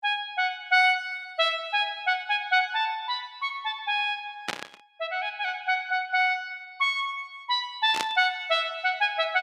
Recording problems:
static burst; at 4.5 s and at 8 s; peak +1 dB vs average level

